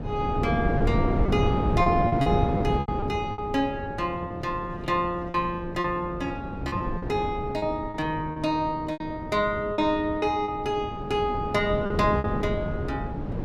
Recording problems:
wind noise; below 330 Hz, SNR 3 dB
packet loss; 7% of the sound replaced, filled with repeated pitch periods

